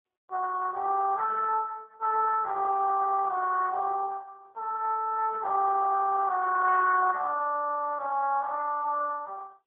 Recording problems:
phone line; 340 Hz to 2.6 kHz, AMR-NB

